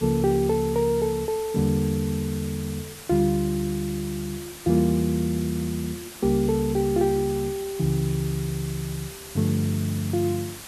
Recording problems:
hiss; slope -1 dB per octave, SNR 14 dB

